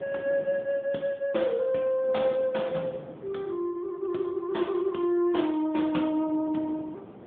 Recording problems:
telephone audio; 220 Hz to 3.6 kHz, AMR-NB
wind noise; below 540 Hz, SNR 17 dB

